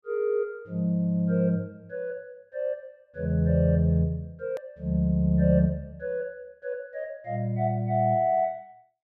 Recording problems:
edit click; at 4.5 s

